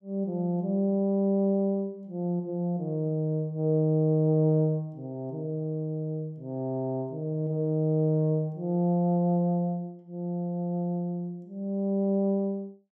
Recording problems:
none

